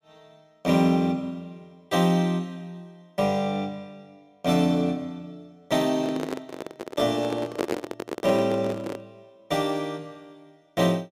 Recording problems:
microphone handling noise; from 6 to 9 s; peak +2 dB vs average level

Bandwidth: 15.5 kHz